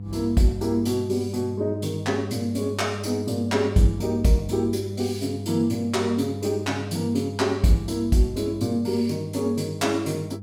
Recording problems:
hum; 50 Hz, harmonics up to 500 Hz, SNR 9 dB

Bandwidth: 17.5 kHz